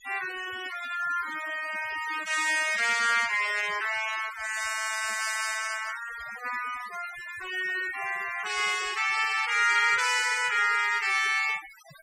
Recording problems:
noise reduction artefacts; signal-to-artefact ratio 15 dB

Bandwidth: 15.5 kHz